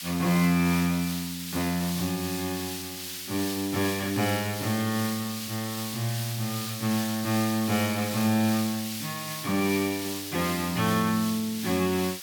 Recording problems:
hiss; SNR 7 dB

